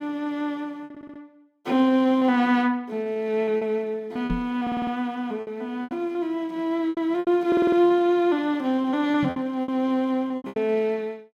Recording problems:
lost packets; 10% of the sound replaced, filled with repeated pitch periods
audio stuttering; at 1 s, at 4.5 s and at 7.5 s
microphone bump; at 4.5 s and at 9 s; peak -2 dB vs average level

